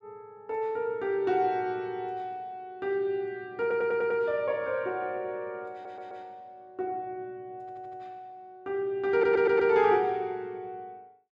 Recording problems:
stutter; 4 times, first at 3.5 s

